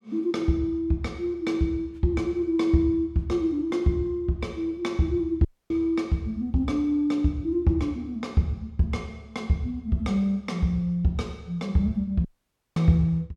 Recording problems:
audio cutting out; at 5.5 s and at 12 s for 0.5 s

